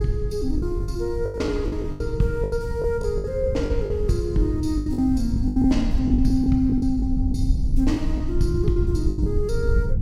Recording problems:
rumble; below 88 Hz, SNR 3 dB
packet loss; 13% of the sound replaced, filled with the last packet

